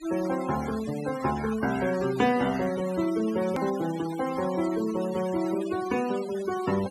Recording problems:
noise reduction artefacts; signal-to-artefact ratio 14 dB
click at an edit; at 3.5 s

